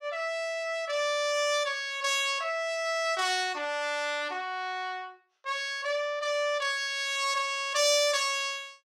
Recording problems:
none

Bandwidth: 16 kHz